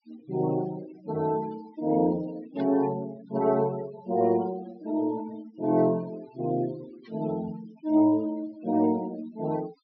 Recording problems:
low-pass filter; nothing above 5.5 kHz
noise reduction artefacts; signal-to-artefact ratio 20 dB
burst of static; at 2.5 s and at 7 s; peak -15 dB vs average level

